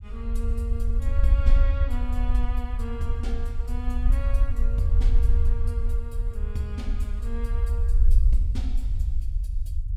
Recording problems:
low-frequency rumble; below 60 Hz, SNR -10 dB

